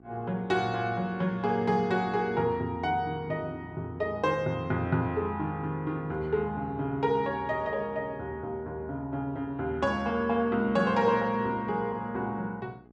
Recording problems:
hum; 60 Hz, harmonics up to 1.2 kHz, SNR 24 dB

